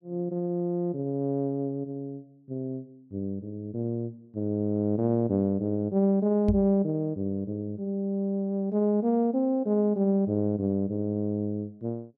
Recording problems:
microphone bump; at 6.5 s; peak +4 dB vs average level

